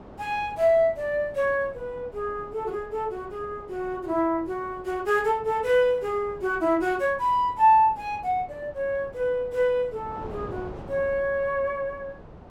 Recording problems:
wind on the microphone; below 650 Hz, SNR 19 dB

